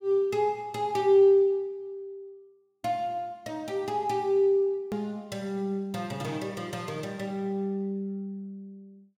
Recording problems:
edit click; at 5 s

